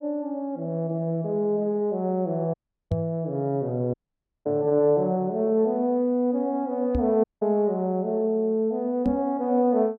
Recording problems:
dropout; at 2.5 s, at 4 s for 0.5 s and at 7 s
microphone bump; at 3 s, at 7 s and at 9 s; peak +2 dB vs average level

